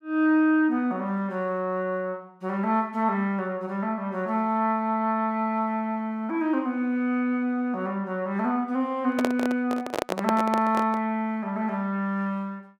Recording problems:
handling noise; from 9 to 11 s; peak +3 dB vs average level

